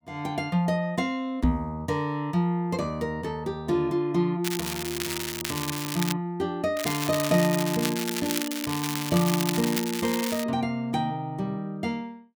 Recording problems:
microphone bump; at 1.5 s; peak +9 dB vs average level
crackle; from 4.5 to 6 s and from 7 to 10 s; loose cable, SNR 4 dB

